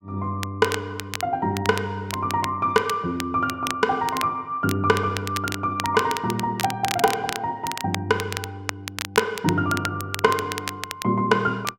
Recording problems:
crackle; vinyl, SNR 9 dB

